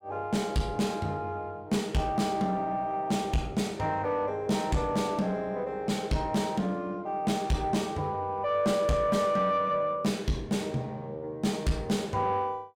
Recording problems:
distorted audio; soft clipping, signal-to-distortion ratio 11 dB

